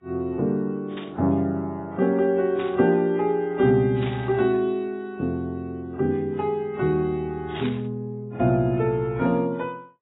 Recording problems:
lossy codec; AAC, then AAC, log-spectral distance 2 dB, nothing above 3.2 kHz
burst of static; 4 times, first at 1 s; peak -9 dB vs average level

